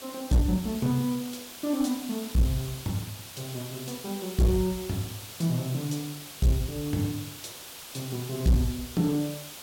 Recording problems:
distortion; hard clipping, uneven, signal-to-distortion ratio 10 dB
background hiss; slope 0 dB per octave, SNR 11 dB

